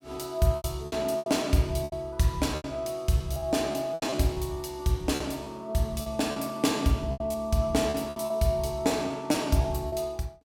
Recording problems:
packet loss; 11% of the sound replaced, filled with repeated pitch periods

